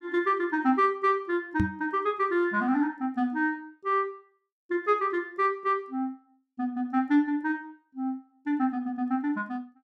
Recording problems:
microphone bump; at 1.5 s; peak +4 dB vs average level

